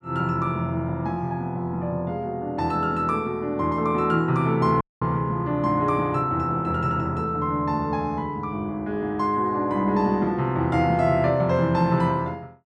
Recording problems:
audio cutting out; at 5 s

